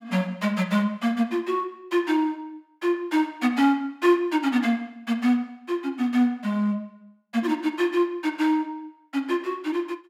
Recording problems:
none

